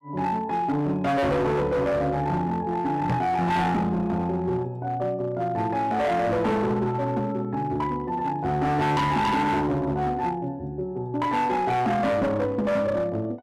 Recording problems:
distortion; hard clipping, uneven, signal-to-distortion ratio 8 dB
microphone thump; at 3 s; peak +3 dB vs average level

